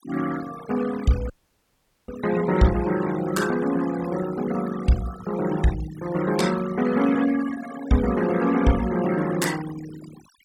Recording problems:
noise reduction artefacts; signal-to-artefact ratio 13 dB
audio cutting out; at 1.5 s for 1 s

